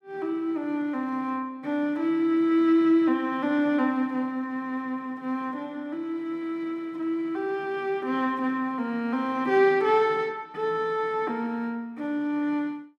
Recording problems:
none

